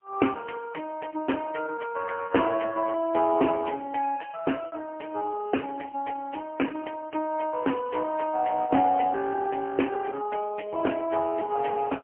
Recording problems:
telephone audio; 220 Hz to 3 kHz, AMR-NB, then MP3
lost packets; 0.5% of the sound replaced, filled with repeated pitch periods

